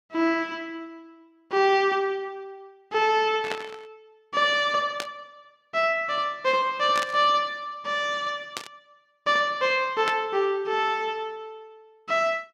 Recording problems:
burst of static; 5 times, first at 3.5 s; peak -2 dB vs average level

